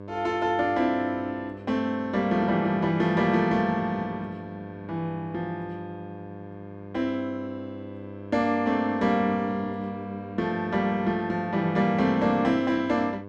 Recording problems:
electrical hum; 50 Hz, harmonics up to 1.6 kHz, SNR 15 dB

